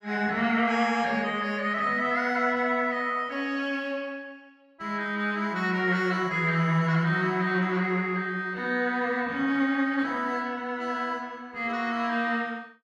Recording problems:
none

